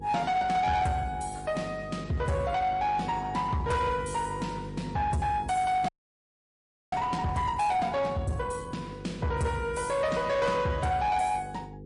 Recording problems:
lossy compression; MP3, log-spectral distance 2 dB, nothing above 10.4 kHz
distorted audio; soft clipping, signal-to-distortion ratio 11 dB
hum; 50 Hz, harmonics up to 500 Hz, SNR 14 dB
audio freezing; at 6 s for 1 s

